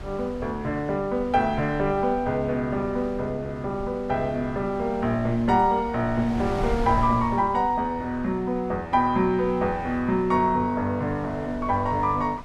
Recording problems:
wind on the microphone; below 250 Hz, SNR 14 dB

